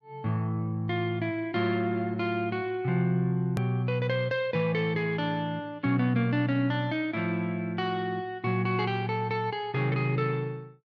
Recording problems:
hard cut with a click; at 3.5 s

